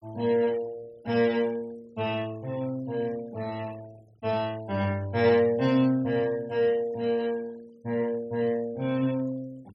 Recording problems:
denoising artefacts; signal-to-artefact ratio 24 dB

